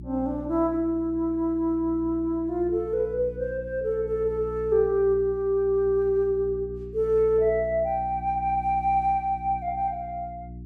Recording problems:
hum; 60 Hz, harmonics up to 360 Hz, SNR 15 dB

